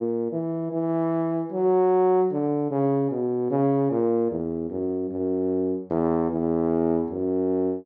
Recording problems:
none

